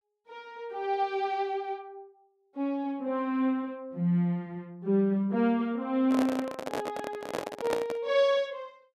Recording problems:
handling noise; from 6 to 8 s; peak +3 dB vs average level

